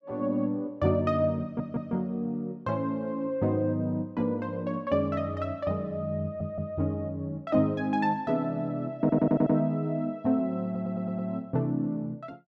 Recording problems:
audio stuttering; 4 times, first at 1.5 s

